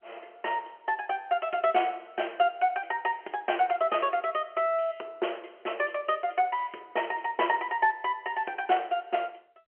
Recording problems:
telephone audio; 300 Hz to 3.2 kHz, G.711

